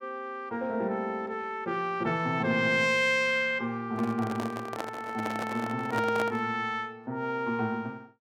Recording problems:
handling noise; from 4 to 6.5 s; peak 0 dB vs average level

